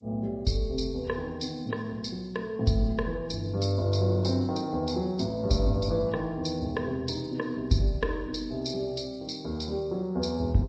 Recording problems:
codec artefacts; MP3, then G.722, log-spectral distance 5 dB, nothing above 16.5 kHz

